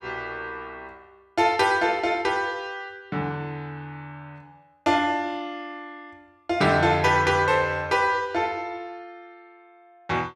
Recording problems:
none

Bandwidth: 14 kHz